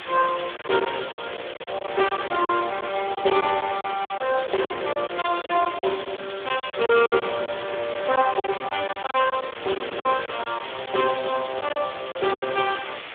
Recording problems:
phone line; 300 Hz to 3.5 kHz, Speex
background hiss; SNR 12 dB
packet loss; 12% of the sound replaced, filled with silence

